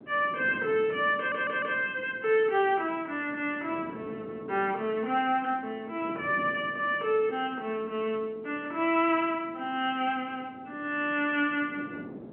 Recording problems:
telephone audio; 240 Hz to 3.1 kHz, G.711
wind noise; below 420 Hz, SNR 17 dB
stutter; at 1 s

